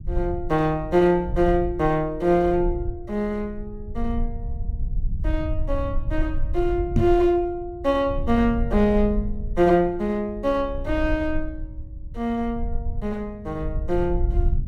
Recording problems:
low-frequency rumble; below 64 Hz, SNR 8 dB
knock on the microphone; at 7 s; peak +6 dB vs average level

